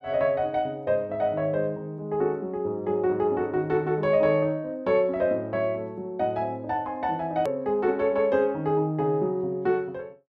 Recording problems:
hard cut with a click; at 7.5 s

